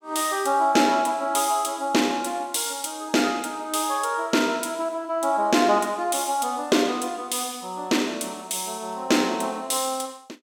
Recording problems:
none

